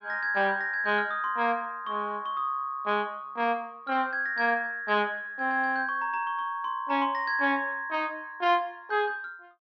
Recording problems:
treble cut off; nothing above 6 kHz

